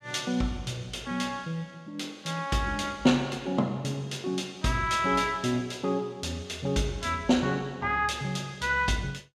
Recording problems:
none

